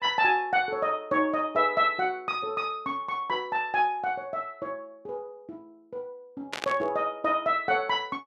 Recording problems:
burst of static; at 6.5 s; peak -1 dB vs average level

